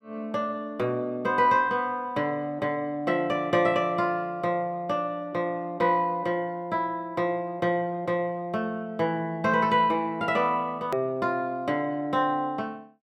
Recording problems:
hard cut with a click; at 11 s

